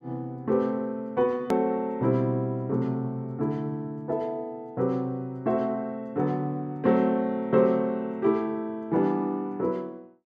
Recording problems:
hard cut with a click; at 1.5 s

